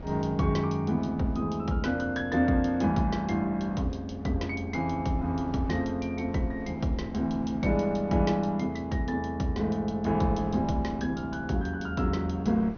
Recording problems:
low-pass filter; nothing above 6.4 kHz
wind noise; below 330 Hz, SNR 19 dB

